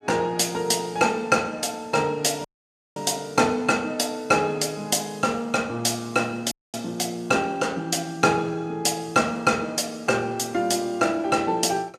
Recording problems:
dropout; at 2.5 s for 0.5 s and at 6.5 s

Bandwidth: 14.5 kHz